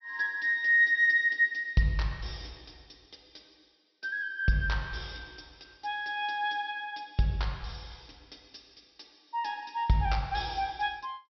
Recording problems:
treble missing; nothing above 5.8 kHz

